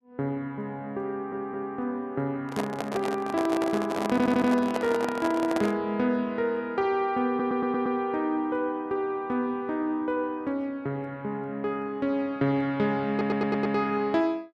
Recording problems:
audio stuttering; 4 times, first at 1 s
handling noise; from 2.5 to 6 s; peak +1 dB vs average level

